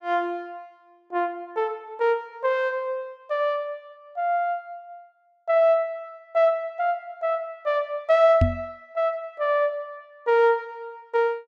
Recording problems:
knock on the microphone; at 8.5 s; peak +7 dB vs average level

